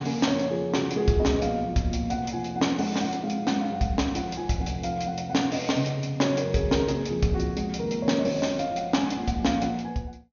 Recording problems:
treble missing; nothing above 6.7 kHz

